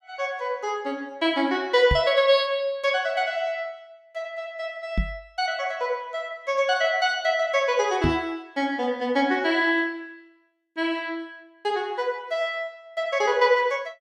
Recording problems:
microphone bump; at 2 s, at 5 s and at 8 s; peak +3 dB vs average level

